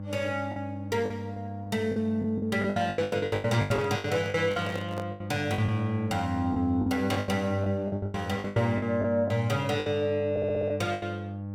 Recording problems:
hum; 50 Hz, harmonics up to 800 Hz, SNR 9 dB
lost packets; 16% of the sound replaced, filled with the last packet
microphone handling noise; from 3.5 to 5 s; peak -4 dB vs average level
stutter; at 10 s

